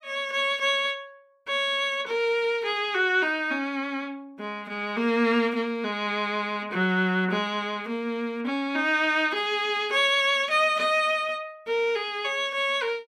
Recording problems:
none

